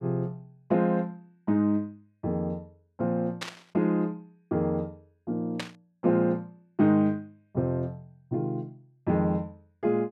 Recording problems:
static burst; at 3.5 s and at 5.5 s; peak -1 dB vs average level

